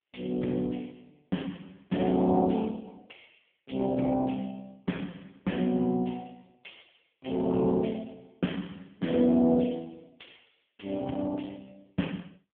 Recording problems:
telephone audio; 86 Hz to 3.4 kHz, AMR-NB

